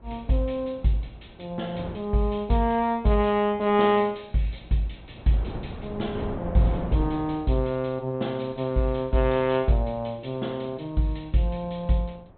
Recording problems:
low-pass filter; nothing above 4 kHz
wind noise; below 460 Hz, SNR 13 dB

